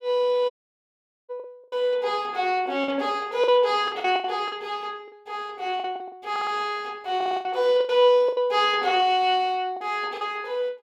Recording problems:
packet loss; 9% of the sound replaced, filled with the last packet
audio cutting out; at 0.5 s for 1 s
stutter; at 6.5 s and at 7 s

